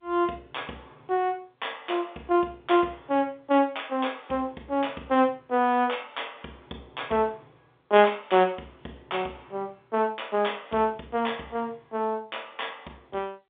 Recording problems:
phone line; 220 Hz to 3.6 kHz, G.711

